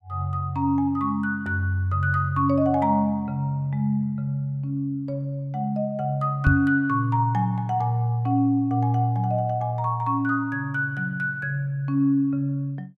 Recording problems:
microphone bump; at 6.5 s; peak +7 dB vs average level

